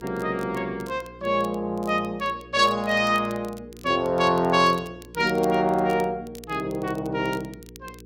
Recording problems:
hum; 60 Hz, harmonics up to 480 Hz, SNR 22 dB
crackling; vinyl, SNR 25 dB

